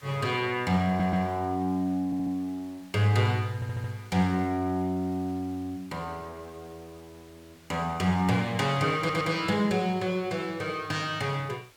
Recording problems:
background hiss; slope -1 dB per octave, SNR 27 dB
stutter; 4 times, first at 1 s

